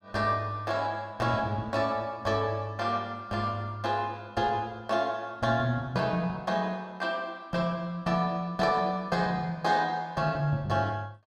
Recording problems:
none

